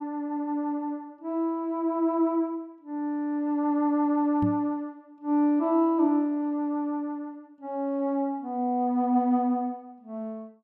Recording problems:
microphone bump; at 4.5 s; peak 0 dB vs average level

